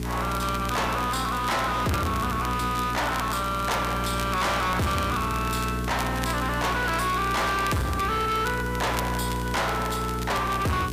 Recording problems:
distorted audio; soft clipping, signal-to-distortion ratio 7 dB
hum; 60 Hz, harmonics up to 1.3 kHz, SNR 6 dB
hiss; slope -3 dB per octave, SNR 17 dB
crackle; vinyl, SNR 14 dB

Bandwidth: 15 kHz